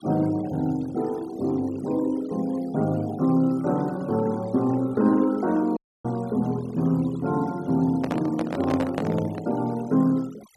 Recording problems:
noise reduction artefacts; signal-to-artefact ratio 22 dB
dropout; at 6 s
handling noise; from 8 to 9.5 s; peak 0 dB vs average level

